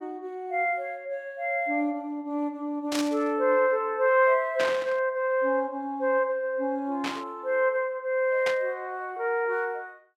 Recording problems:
burst of static; 4 times, first at 3 s; peak -1 dB vs average level

